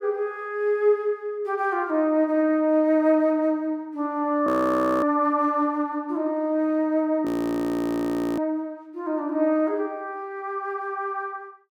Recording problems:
frozen audio; at 4.5 s for 0.5 s and at 7.5 s for 1 s

